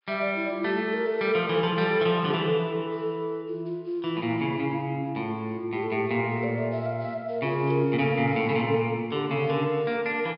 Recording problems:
treble cut off; nothing above 5.5 kHz

